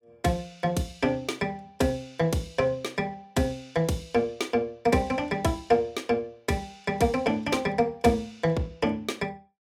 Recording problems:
none

